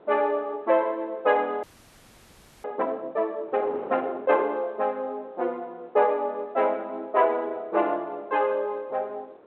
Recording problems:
telephone audio; 340 Hz to 3.3 kHz, G.726
wind on the microphone; below 760 Hz, SNR 21 dB
audio freezing; at 1.5 s for 1 s

